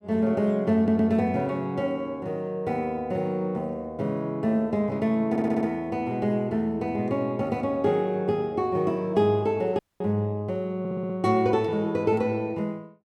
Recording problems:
stutter; at 1 s, at 5.5 s and at 11 s
dropout; at 10 s

